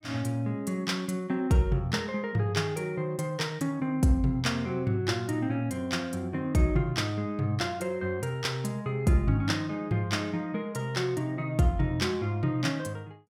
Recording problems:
none

